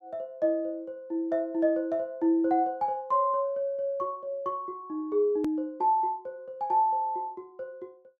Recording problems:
hard cut with a click; at 5.5 s

